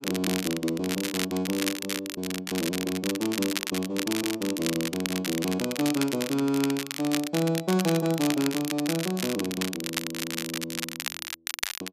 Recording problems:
crackling; vinyl, SNR 4 dB

